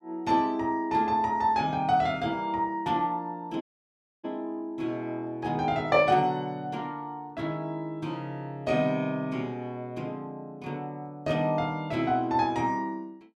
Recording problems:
audio cutting out; at 3.5 s for 0.5 s

